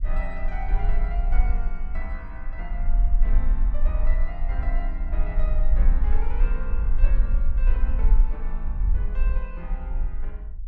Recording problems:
rumble; below 42 Hz, strongest tone 22 Hz, SNR -13 dB

